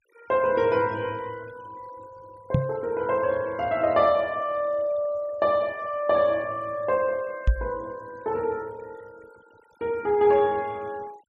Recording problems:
denoising artefacts; signal-to-artefact ratio 26 dB
microphone bump; at 2.5 s and at 7.5 s; peak +7 dB vs average level

